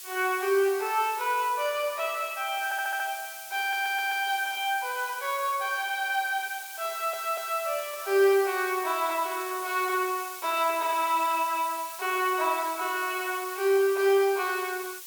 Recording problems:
background hiss; slope +4 dB per octave, SNR 12 dB
stutter; at 2.5 s, at 3.5 s and at 7 s

